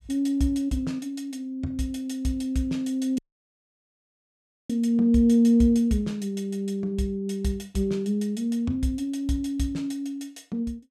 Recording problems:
audio cutting out; at 3 s for 1.5 s

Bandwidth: 14.5 kHz